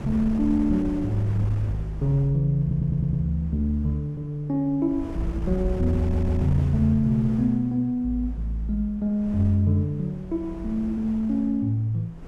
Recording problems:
wind on the microphone; below 160 Hz, SNR 12 dB
audio stuttering; at 2.5 s and at 6 s

